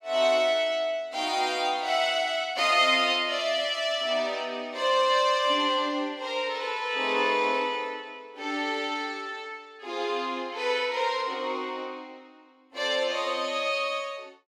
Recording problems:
none

